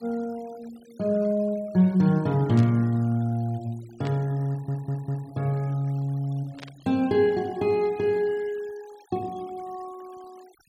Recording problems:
denoising artefacts; signal-to-artefact ratio 26 dB
static burst; at 2.5 s, at 4 s and at 6.5 s; peak -11 dB vs average level
audio stuttering; at 4.5 s

